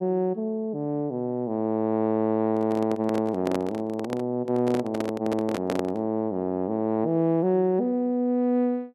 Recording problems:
handling noise; from 2.5 to 6 s; peak +1 dB vs average level

